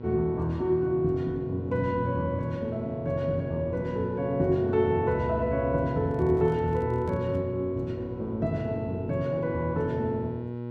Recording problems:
electrical hum; 60 Hz, harmonics up to 1.1 kHz, SNR 10 dB
handling noise; from 6 to 7.5 s; peak -9 dB vs average level

